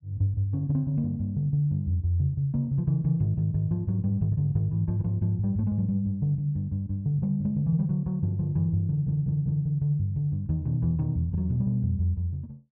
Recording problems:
stutter; at 9 s

